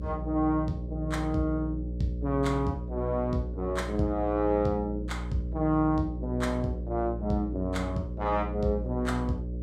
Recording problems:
mains hum; 60 Hz, harmonics up to 540 Hz, SNR 6 dB

